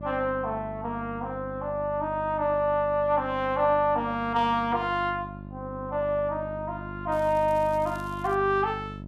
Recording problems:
hum; 50 Hz, harmonics up to 700 Hz, SNR 13 dB
crackling; from 7 to 8.5 s; loose cable, SNR 27 dB

